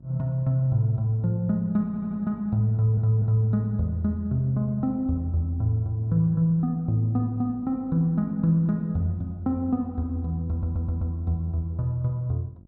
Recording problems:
hum; 50 Hz, harmonics up to 650 Hz, SNR 24 dB
stutter; at 2 s, at 2.5 s and at 11 s

